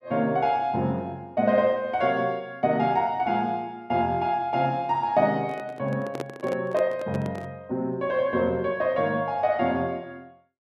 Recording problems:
microphone handling noise; from 5.5 to 7.5 s; peak -3 dB vs average level

